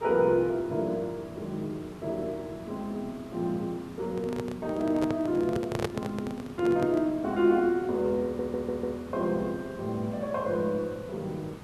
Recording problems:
background hiss; slope -6 dB per octave, SNR 16 dB
microphone handling noise; from 4 to 7 s; peak +3 dB vs average level
audio stuttering; at 8 s

